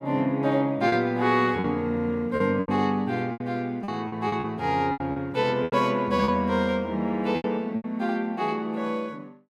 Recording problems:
lost packets; 9% of the sound replaced, filled with repeated pitch periods

